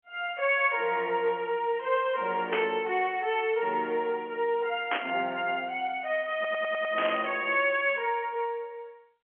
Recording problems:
phone line; 240 Hz to 3.3 kHz, G.711
static burst; at 2.5 s, at 5 s and at 7 s; peak +2 dB vs average level
audio stuttering; at 6.5 s

